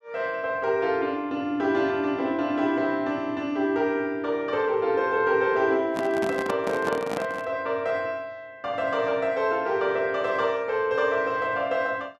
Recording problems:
handling noise; from 6 to 7.5 s; peak -2 dB vs average level

